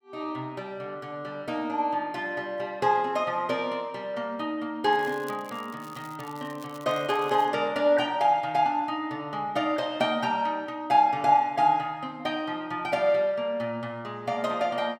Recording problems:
crackling; from 5 to 7.5 s; loose cable, SNR 24 dB

